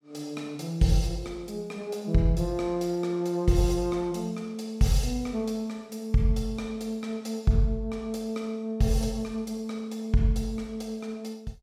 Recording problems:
none

